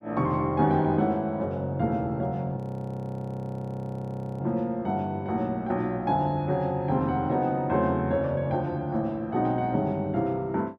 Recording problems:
frozen audio; at 2.5 s for 2 s

